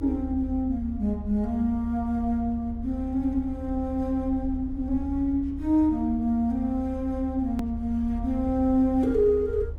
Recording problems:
low-frequency rumble; below 74 Hz, SNR 11 dB
hard cut with a click; at 7.5 s

